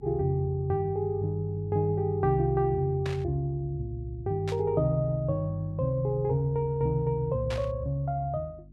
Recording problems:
electrical hum; 50 Hz, harmonics up to 350 Hz, SNR 20 dB
burst of static; at 3 s, at 4.5 s and at 7.5 s; peak -6 dB vs average level

